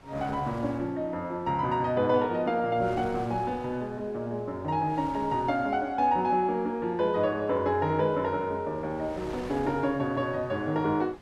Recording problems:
wind on the microphone; below 1.3 kHz, SNR 20 dB

